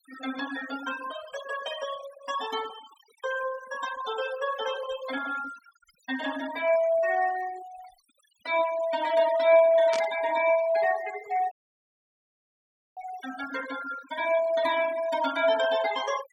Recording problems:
noise reduction artefacts; signal-to-artefact ratio 15 dB
burst of static; at 10 s; peak -4 dB vs average level
dropout; at 12 s for 1.5 s

